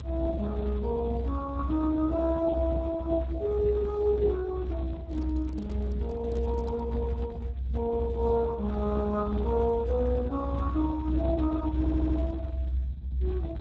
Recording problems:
lossy compression; Speex, log-spectral distance 3 dB
low-frequency rumble; below 76 Hz, strongest tone 64 Hz, SNR 4 dB
handling noise; from 5 to 7 s; peak -10 dB vs average level
stutter; at 12 s

